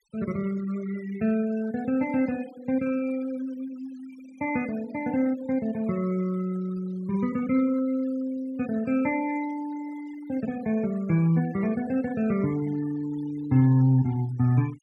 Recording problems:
denoising artefacts; signal-to-artefact ratio 22 dB

